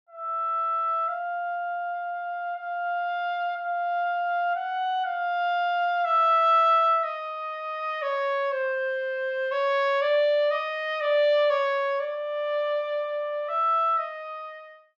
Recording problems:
treble cut off; nothing above 8 kHz

